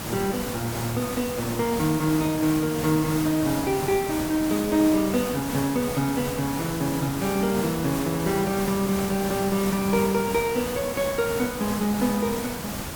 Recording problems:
background hiss; slope -4 dB per octave, SNR 6 dB

